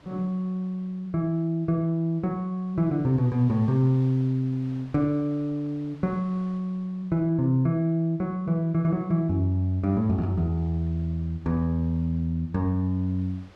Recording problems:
wind on the microphone; below 2 kHz, SNR 29 dB

